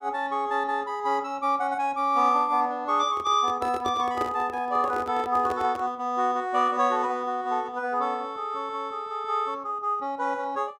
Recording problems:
microphone handling noise; from 3 to 6 s; peak -3 dB vs average level

